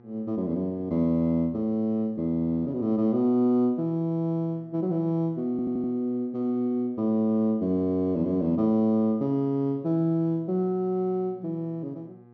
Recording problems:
treble missing; nothing above 6.4 kHz
hum; 60 Hz, harmonics up to 1.6 kHz, SNR 27 dB
stutter; at 5.5 s

